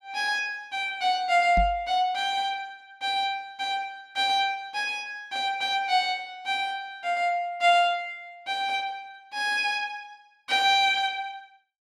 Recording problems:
microphone thump; at 1.5 s; peak +1 dB vs average level

